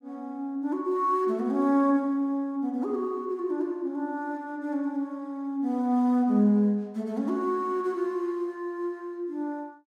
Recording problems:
none

